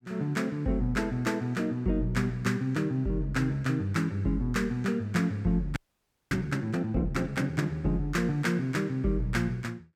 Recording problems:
frozen audio; at 6 s for 0.5 s

